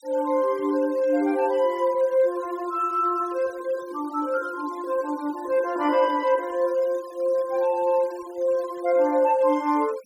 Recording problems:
noise reduction artefacts; signal-to-artefact ratio 25 dB

